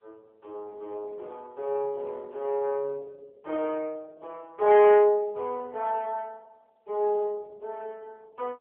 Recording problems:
telephone audio; 280 Hz to 3.3 kHz, AMR-NB
distorted audio; soft clipping, signal-to-distortion ratio 13 dB

